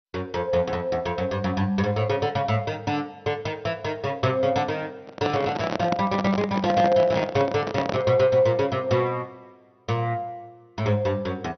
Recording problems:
codec artefacts; MP2, log-spectral distance 2 dB, nothing above 6 kHz
handling noise; from 5 to 8 s; peak +1 dB vs average level

